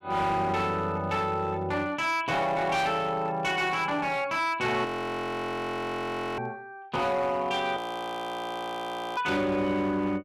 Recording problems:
distorted audio; hard clipping, signal-to-distortion ratio 11 dB
frozen audio; at 5 s for 1.5 s and at 8 s for 1.5 s

